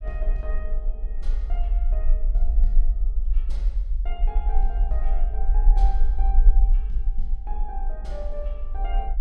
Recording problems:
rumble; below 42 Hz, SNR -14 dB

